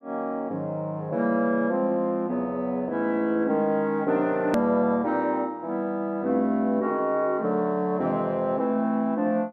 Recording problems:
hard cut with a click; at 4.5 s

